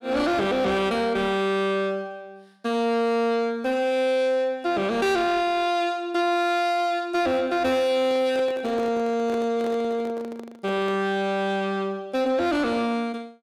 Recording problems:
distorted audio; soft clipping, signal-to-distortion ratio 10 dB
microphone handling noise; from 8 to 11 s; peak -6 dB vs average level

